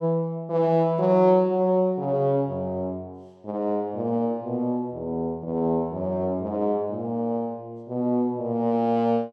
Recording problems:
none

